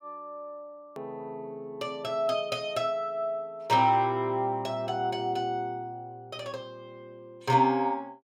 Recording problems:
hard cut with a click; at 1 s

